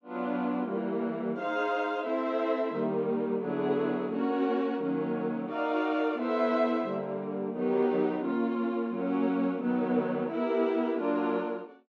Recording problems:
none

